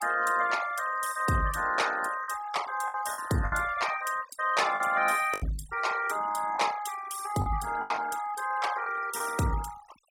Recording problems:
noise reduction artefacts; signal-to-artefact ratio 14 dB
lost packets; 5% of the sound replaced, filled with the last packet

